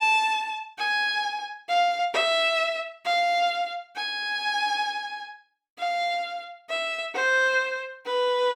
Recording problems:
none

